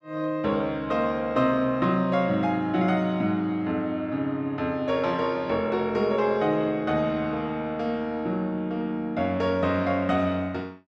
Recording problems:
none

